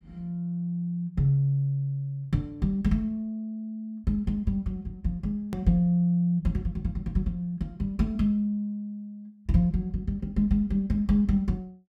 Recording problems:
hard cut with a click; at 5.5 s

